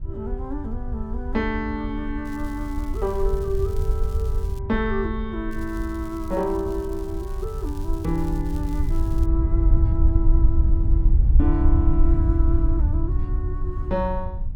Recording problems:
wind on the microphone; below 70 Hz, SNR -4 dB
crackle; from 2.5 to 4.5 s and from 5.5 to 9.5 s; loose cable, SNR 21 dB

